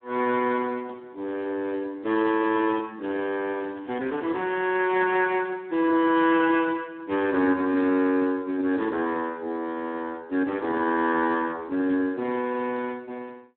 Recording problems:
phone line; 190 Hz to 3 kHz, Speex
crackle; from 3.5 to 5 s and at 12 s; loose cable, SNR 29 dB

